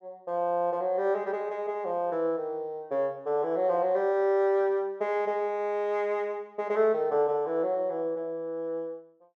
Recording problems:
none

